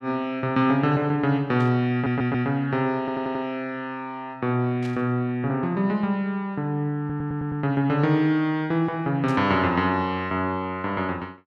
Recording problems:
burst of static; at 1.5 s, at 5 s and at 9.5 s; peak -13 dB vs average level
stutter; at 2 s, at 3 s and at 7 s

